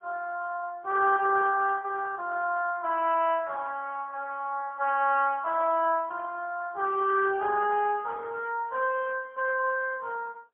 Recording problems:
phone line; 340 Hz to 3.3 kHz, AMR-NB, then MP3

